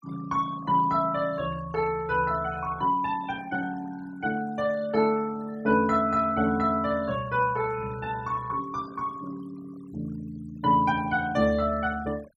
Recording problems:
noise reduction artefacts; signal-to-artefact ratio 22 dB

